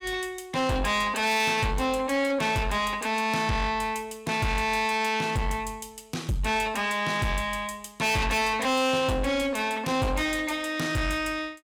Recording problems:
distorted audio; soft clipping, signal-to-distortion ratio 7 dB

